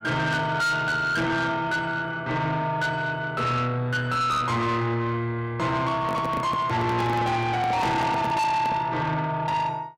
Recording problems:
distorted audio; soft clipping, signal-to-distortion ratio 8 dB
microphone handling noise; from 6 to 9 s; peak +1 dB vs average level

